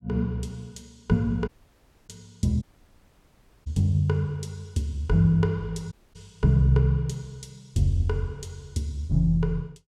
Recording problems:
audio cutting out; at 1.5 s for 0.5 s, at 2.5 s for 1 s and at 6 s

